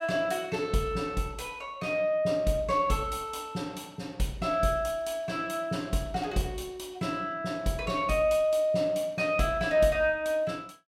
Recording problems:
none

